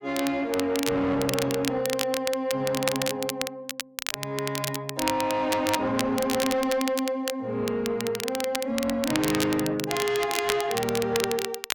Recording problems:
distortion; soft clipping, signal-to-distortion ratio 10 dB
crackling; vinyl, SNR 5 dB

